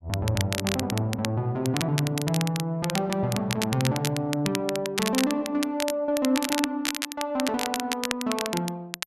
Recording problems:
crackling; vinyl, SNR 5 dB

